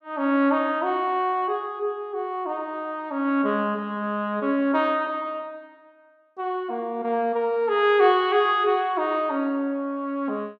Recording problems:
none

